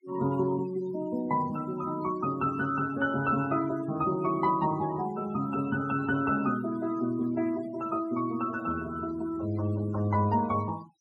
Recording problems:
denoising artefacts; signal-to-artefact ratio 18 dB

